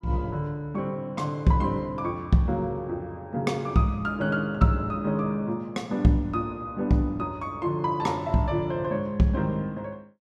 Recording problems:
none

